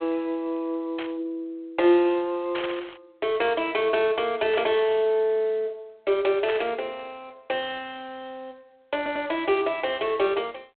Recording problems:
phone line; 300 Hz to 3.4 kHz, G.726
static burst; 4 times, first at 1 s; peak -4 dB vs average level
audio stuttering; at 9 s

